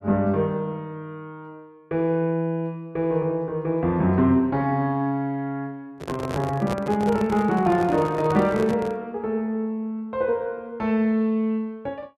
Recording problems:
handling noise; from 6 to 9 s; peak -2 dB vs average level

